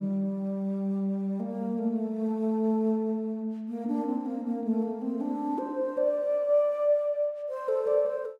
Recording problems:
none

